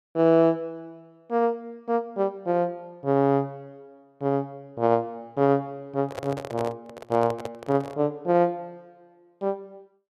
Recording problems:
microphone handling noise; from 6 to 8 s; peak -4 dB vs average level

